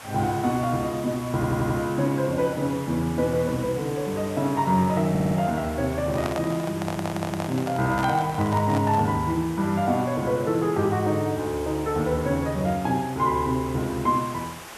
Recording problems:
background hiss; SNR 16 dB
audio stuttering; at 1.5 s, at 5 s and at 7 s
microphone handling noise; from 6 to 9 s; peak -2 dB vs average level

